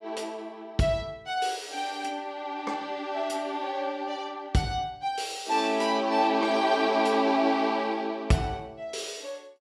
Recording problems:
none

